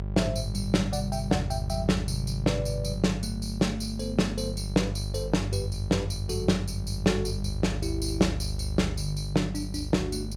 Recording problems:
electrical hum; 50 Hz, harmonics up to 600 Hz, SNR 5 dB

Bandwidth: 16.5 kHz